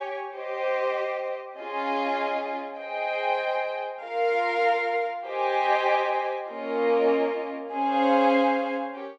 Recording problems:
none

